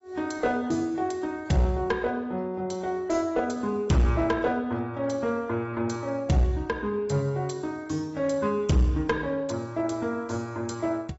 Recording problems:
treble cut off; nothing above 7.6 kHz
codec artefacts; AAC, log-spectral distance 3 dB
distortion; hard clipping, uneven, signal-to-distortion ratio 11 dB

